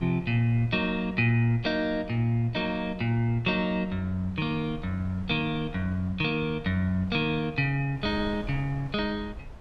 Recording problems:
wind on the microphone; below 150 Hz, SNR 17 dB

